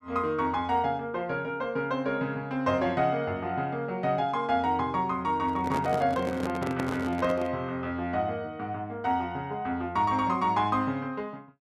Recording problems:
handling noise; from 5.5 to 7.5 s; peak -1 dB vs average level

